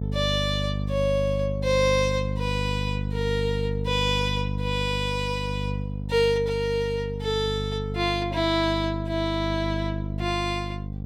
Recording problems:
hum; 50 Hz, harmonics up to 550 Hz, SNR 4 dB

